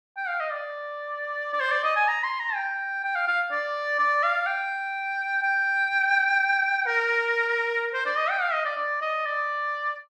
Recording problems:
none

